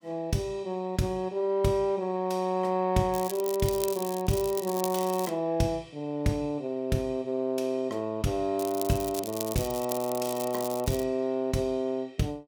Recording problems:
crackle; from 3 to 5.5 s and from 8.5 to 11 s; loose cable, SNR 9 dB

